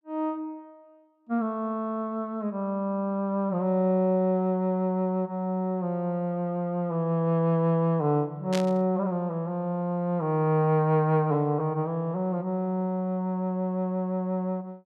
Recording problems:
burst of static; at 8.5 s; peak -2 dB vs average level

